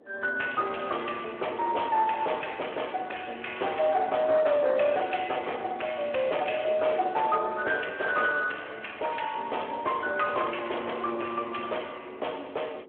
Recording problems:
telephone audio; 340 Hz to 3.2 kHz, Speex
distortion; hard clipping, uneven, signal-to-distortion ratio 13 dB
wind on the microphone; below 780 Hz, SNR 21 dB

